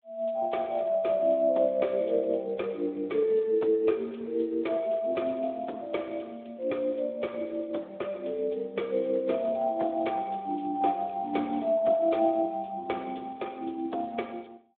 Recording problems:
phone line; 240 Hz to 3.5 kHz, Speex

